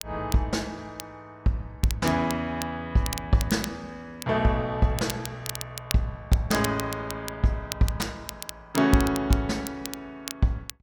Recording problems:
crackle; vinyl, SNR 11 dB

